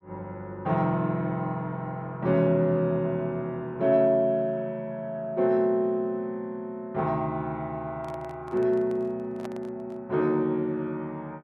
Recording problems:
microphone handling noise; from 8 to 10 s; peak -8 dB vs average level

